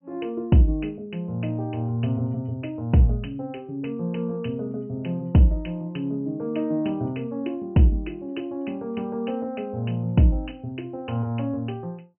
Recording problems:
treble missing; nothing above 3 kHz

